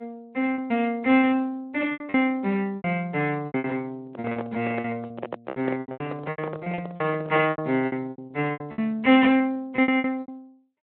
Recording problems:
telephone audio; 190 Hz to 3.2 kHz, Speex
packet loss; 16% of the sound replaced, filled with repeated pitch periods
handling noise; from 4 to 7.5 s; peak -3 dB vs average level

